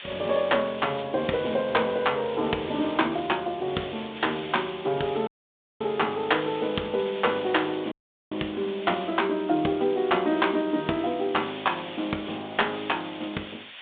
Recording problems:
telephone audio; 220 Hz to 3.7 kHz, G.726
hiss; SNR 14 dB
audio cutting out; at 5.5 s for 0.5 s and at 8 s

